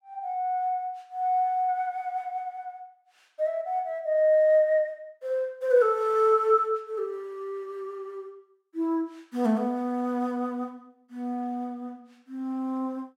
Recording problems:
none

